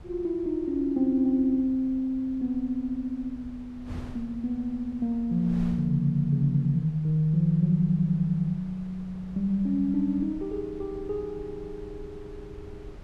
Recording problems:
wind on the microphone; below 150 Hz, SNR 19 dB

